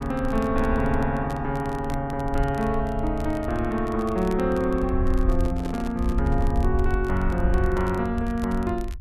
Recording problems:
low-frequency rumble; below 70 Hz, SNR 5 dB
crackling; vinyl, SNR 23 dB
microphone handling noise; from 5 to 6.5 s; peak -6 dB vs average level

